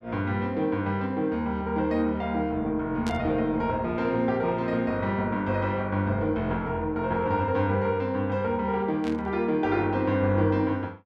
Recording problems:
burst of static; at 3 s and at 9 s; peak -8 dB vs average level

